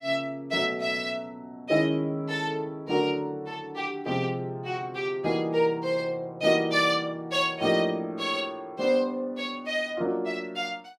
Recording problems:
none

